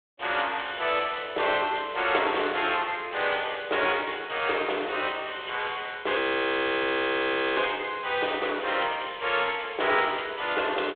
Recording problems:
phone line; 340 Hz to 3.7 kHz, G.726
audio freezing; at 6 s for 1.5 s

